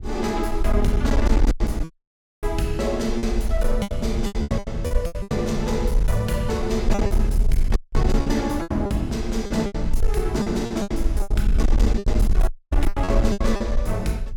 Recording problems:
distorted audio; hard clipping, uneven, signal-to-distortion ratio 11 dB
rumble; below 52 Hz, SNR 1 dB
wind on the microphone; below 130 Hz, SNR 12 dB
lost packets; 12% of the sound replaced, filled with repeated pitch periods
dropout; at 2 s for 0.5 s, at 8 s and at 12 s

